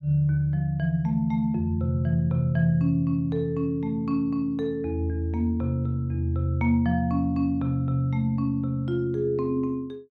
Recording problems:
none

